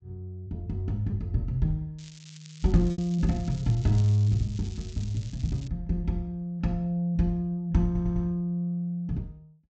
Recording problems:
low-pass filter; nothing above 8 kHz
packet loss; 0.9% of the sound replaced, filled with repeated pitch periods
crackle; from 2 to 5.5 s; loose cable, SNR 21 dB
stutter; at 8 s

